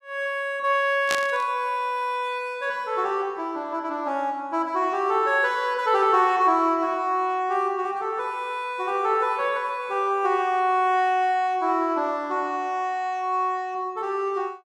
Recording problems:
burst of static; at 1 s; peak +1 dB vs average level

